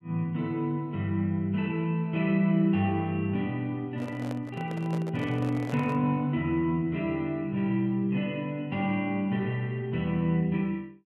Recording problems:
microphone handling noise; from 4 to 6 s; peak -7 dB vs average level

